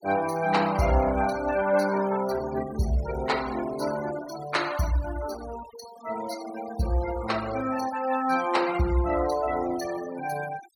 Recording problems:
denoising artefacts; signal-to-artefact ratio 15 dB

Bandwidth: 17.5 kHz